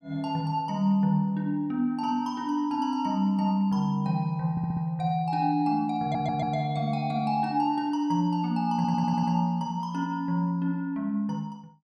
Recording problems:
stutter; at 4.5 s, at 6 s and at 9 s

